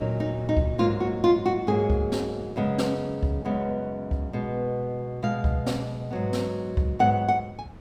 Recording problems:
wind on the microphone; below 320 Hz, SNR 21 dB

